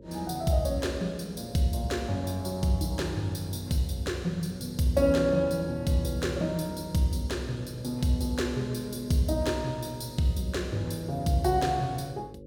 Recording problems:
hum; 50 Hz, harmonics up to 550 Hz, SNR 18 dB

